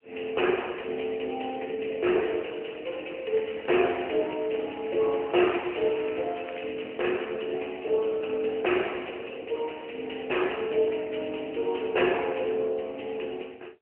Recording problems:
telephone audio; 300 Hz to 3.1 kHz, AMR-NB
crackling; from 3.5 to 6.5 s; loose cable, SNR 18 dB

